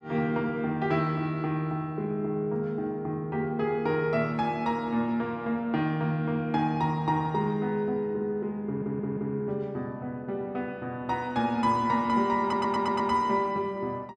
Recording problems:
stutter; at 8.5 s and at 12 s

